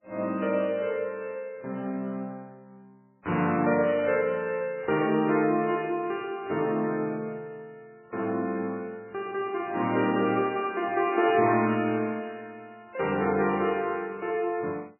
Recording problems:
codec artefacts; MP3, log-spectral distance 3 dB, nothing above 2.5 kHz

